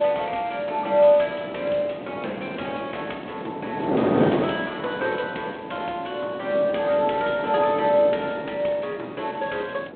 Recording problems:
telephone audio; 240 Hz to 3.6 kHz, G.726
wind noise; below 620 Hz, SNR 6 dB

